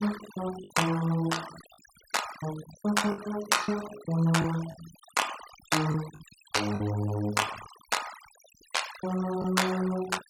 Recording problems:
noise reduction artefacts; signal-to-artefact ratio 13 dB
lost packets; 4% of the sound replaced, filled with the last packet

